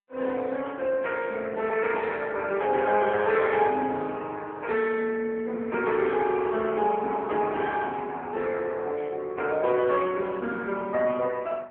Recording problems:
telephone audio; 280 Hz to 3.5 kHz, AMR-NB

